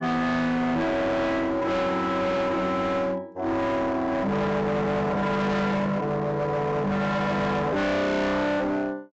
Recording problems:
low-pass filter; nothing above 8 kHz
distorted audio; hard clipping, signal-to-distortion ratio 7 dB

